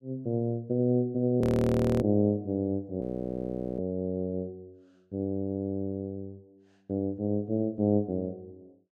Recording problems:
audio freezing; at 1.5 s for 0.5 s and at 3 s for 1 s

